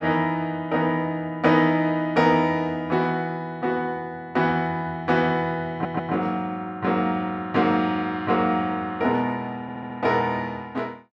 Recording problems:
stutter; at 5.5 s and at 9.5 s

